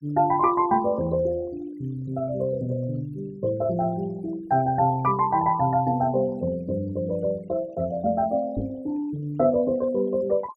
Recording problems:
denoising artefacts; signal-to-artefact ratio 24 dB
knock on the microphone; at 8.5 s; peak 0 dB vs average level

